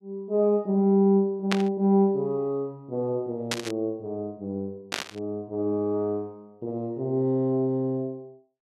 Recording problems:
static burst; at 1.5 s, at 3.5 s and at 5 s; peak +3 dB vs average level

